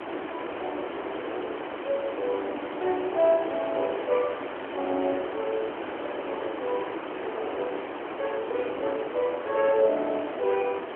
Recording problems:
phone line; 260 Hz to 3.3 kHz, AMR-NB
background hiss; SNR 5 dB

